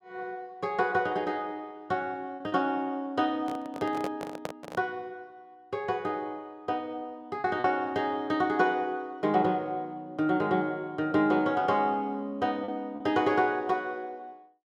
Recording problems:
packet loss; 1.7% of the sound replaced, filled with repeated pitch periods
handling noise; from 3.5 to 5 s; peak -1 dB vs average level

